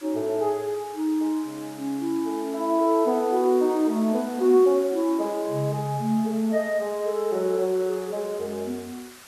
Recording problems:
hiss; SNR 20 dB

